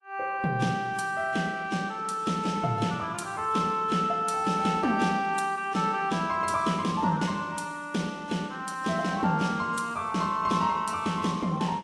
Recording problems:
lossy compression; AAC, log-spectral distance 3 dB

